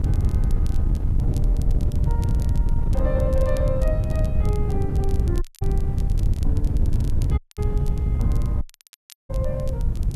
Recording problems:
background hiss; SNR 29 dB
wind on the microphone; below 100 Hz, SNR -9 dB
crackling; vinyl, SNR 16 dB
dropout; at 5.5 s, at 7.5 s and at 8.5 s for 0.5 s

